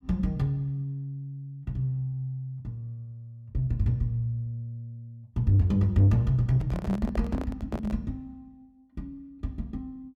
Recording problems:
distortion; soft clipping, signal-to-distortion ratio 11 dB
handling noise; from 6.5 to 8 s; peak -4 dB vs average level

